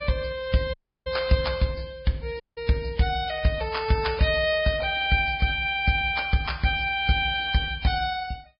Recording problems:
treble missing; nothing above 5.2 kHz
codec artefacts; Vorbis, log-spectral distance 4 dB
dropout; at 0.5 s and at 2.5 s

